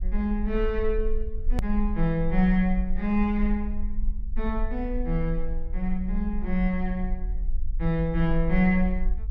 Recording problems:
rumble; below 42 Hz, strongest tone 18 Hz, SNR 5 dB
click at an edit; at 1.5 s

